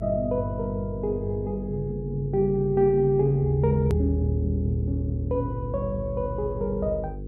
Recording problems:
hum; 50 Hz, harmonics up to 500 Hz, SNR 11 dB
hard cut with a click; at 4 s

